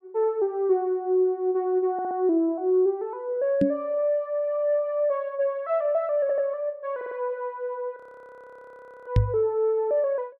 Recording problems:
stutter; at 2 s, at 6 s and at 7 s
microphone thump; at 3.5 s and at 9 s; peak +8 dB vs average level
audio freezing; at 8 s for 1 s

